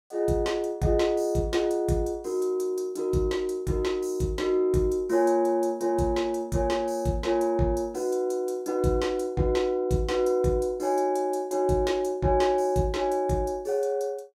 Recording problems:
none

